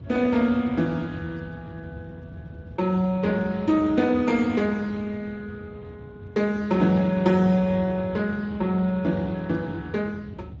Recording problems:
codec artefacts; Speex, log-spectral distance 3 dB, nothing above 7.3 kHz
rumble; below 200 Hz, SNR 17 dB

